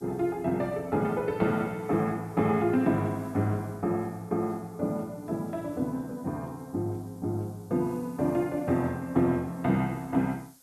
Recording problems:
background hiss; SNR 28 dB

